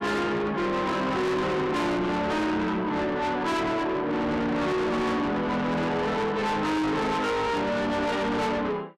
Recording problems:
distortion; soft clipping, signal-to-distortion ratio 6 dB

